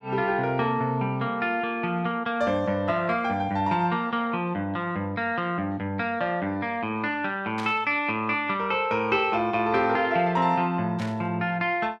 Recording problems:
static burst; at 7.5 s and at 11 s; peak -8 dB vs average level

